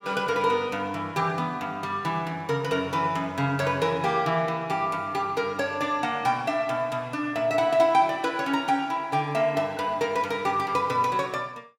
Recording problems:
none

